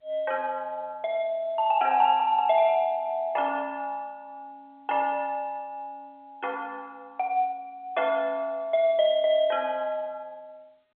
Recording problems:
phone line; 340 Hz to 3.8 kHz, G.711

